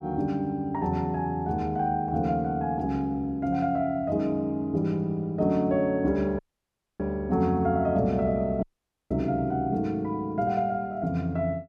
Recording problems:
audio cutting out; at 6.5 s for 0.5 s and at 8.5 s

